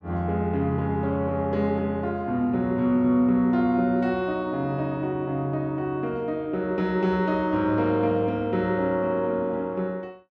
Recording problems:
none

